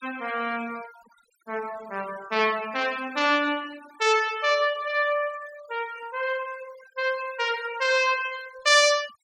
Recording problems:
denoising artefacts; signal-to-artefact ratio 20 dB

